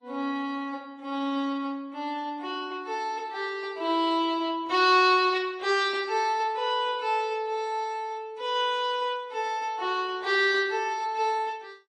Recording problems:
lossy compression; AAC, then MP3, log-spectral distance 2 dB, nothing above 10.4 kHz

